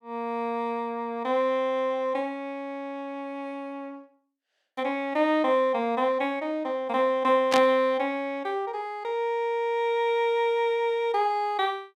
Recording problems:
static burst; at 7.5 s; peak +3 dB vs average level

